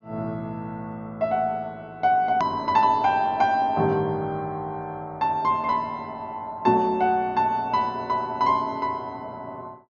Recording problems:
treble missing; nothing above 6.7 kHz
edit click; at 2.5 s

